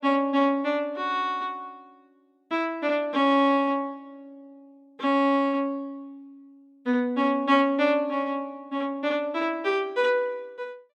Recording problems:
none

